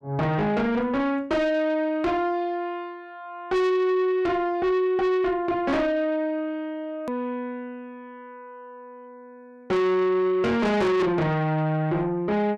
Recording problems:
distorted audio; soft clipping, signal-to-distortion ratio 6 dB
edit click; at 7 s

